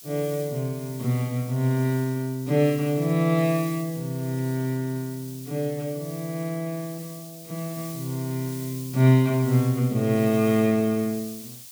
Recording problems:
hiss; slope +5 dB per octave, SNR 16 dB

